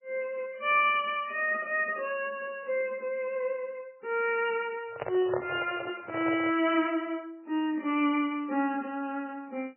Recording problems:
lossy compression; MP3, log-spectral distance 3 dB
handling noise; from 5 to 6.5 s; peak +2 dB vs average level

